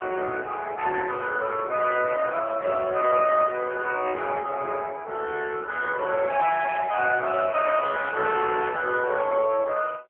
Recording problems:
phone line; 300 Hz to 3.3 kHz, AMR-NB

